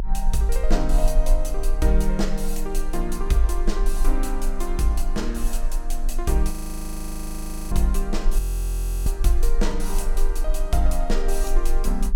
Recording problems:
rumble; below 34 Hz, strongest tone 22 Hz, SNR 0 dB
audio freezing; at 6.5 s for 1 s and at 8.5 s for 0.5 s

